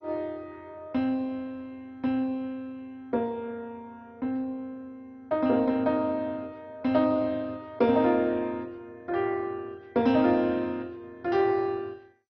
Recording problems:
lossy codec; MP2, log-spectral distance 2 dB, nothing above 5.2 kHz

